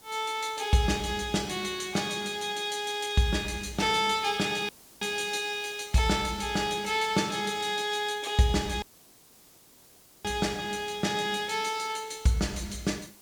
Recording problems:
background hiss; SNR 24 dB
audio cutting out; at 4.5 s and at 9 s for 1.5 s

